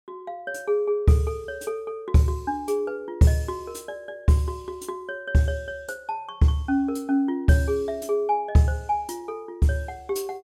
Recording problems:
none

